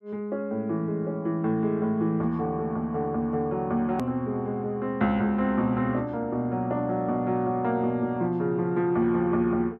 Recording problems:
click at an edit; at 4 s

